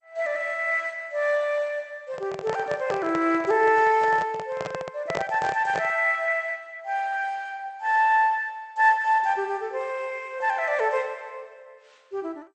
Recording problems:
lossy codec; MP2, log-spectral distance 2 dB, nothing above 8 kHz
handling noise; from 2 to 6 s; peak 0 dB vs average level

